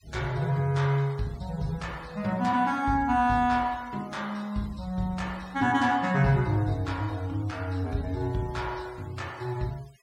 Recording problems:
noise reduction artefacts; signal-to-artefact ratio 24 dB

